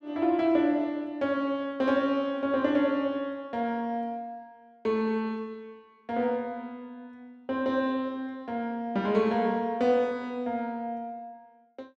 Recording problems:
none

